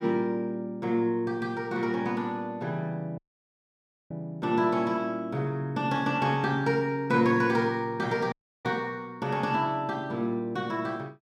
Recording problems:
audio cutting out; at 3 s for 1 s and at 8.5 s

